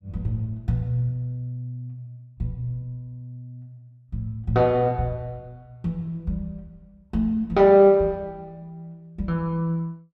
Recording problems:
none

